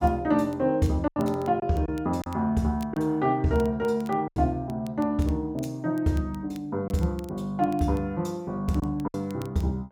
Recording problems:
crackling; vinyl, SNR 27 dB
lost packets; 4% of the sound replaced, filled with silence

